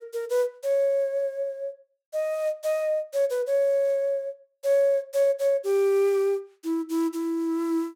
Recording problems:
none

